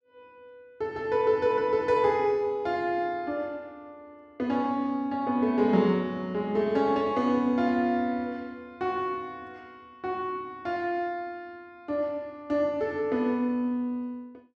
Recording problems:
none

